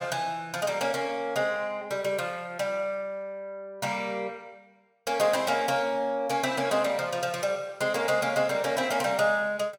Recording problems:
none

